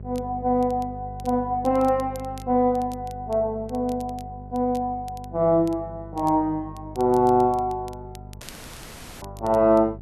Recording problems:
hum; 50 Hz, harmonics up to 600 Hz, SNR 17 dB
crackle; vinyl, SNR 27 dB
dropout; at 8.5 s for 1 s

